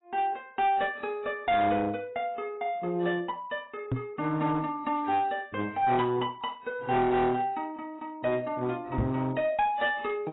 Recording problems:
codec artefacts; AAC, log-spectral distance 2 dB, nothing above 3.2 kHz
distorted audio; hard clipping, uneven, signal-to-distortion ratio 10 dB
microphone bump; at 4 s and at 9 s; peak +4 dB vs average level

